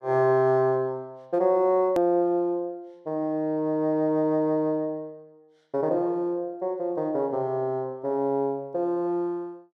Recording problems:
edit click; at 2 s

